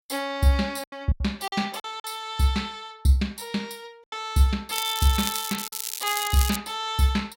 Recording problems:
lost packets; 6% of the sound replaced, filled with silence
crackle; from 4.5 to 6.5 s; loose cable, SNR 5 dB

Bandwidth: 16.5 kHz